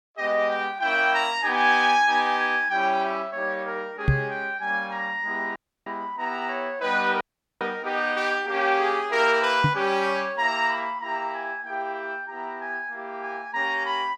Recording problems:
microphone bump; at 4 s and at 9.5 s; peak +7 dB vs average level
audio cutting out; at 5.5 s and at 7 s

